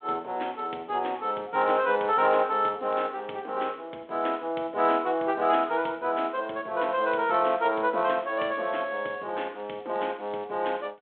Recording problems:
telephone audio; 280 Hz to 3.6 kHz, G.726

